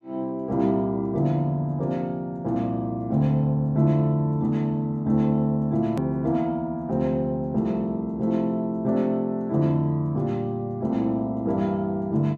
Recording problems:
hard cut with a click; at 6 s

